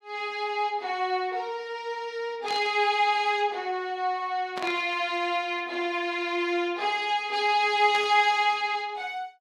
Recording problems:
burst of static; at 2.5 s, at 4.5 s and at 8 s; peak -6 dB vs average level

